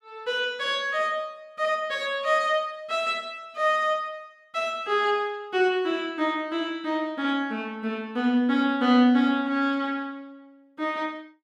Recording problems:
none

